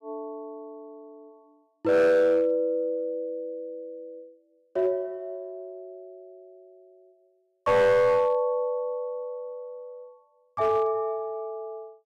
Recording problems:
distorted audio; hard clipping, signal-to-distortion ratio 11 dB

